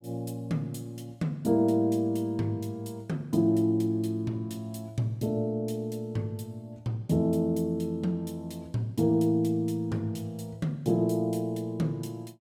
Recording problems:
none

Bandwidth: 16 kHz